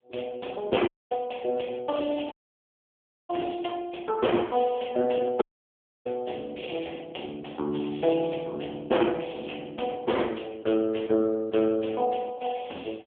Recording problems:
phone line; 260 Hz to 3.3 kHz, AMR-NB
dropout; at 1 s, at 2.5 s for 1 s and at 5.5 s for 0.5 s

